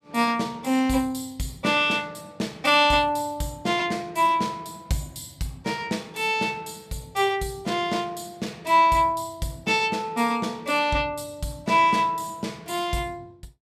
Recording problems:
none

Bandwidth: 14.5 kHz